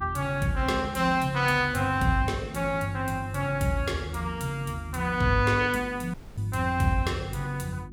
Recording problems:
hum; 50 Hz, harmonics up to 350 Hz, SNR 17 dB
audio cutting out; at 6 s

